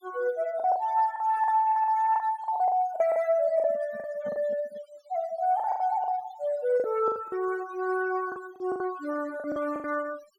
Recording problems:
noise reduction artefacts; signal-to-artefact ratio 18 dB
lost packets; 12% of the sound replaced, filled with the last packet
microphone handling noise; from 3.5 to 5 s; peak -12 dB vs average level

